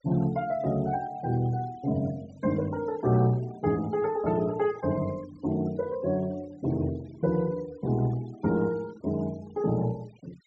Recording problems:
treble missing; nothing above 8 kHz
denoising artefacts; signal-to-artefact ratio 24 dB

